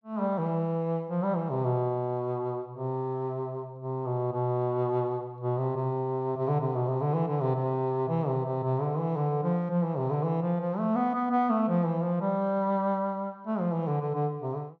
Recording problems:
treble missing; nothing above 6.7 kHz

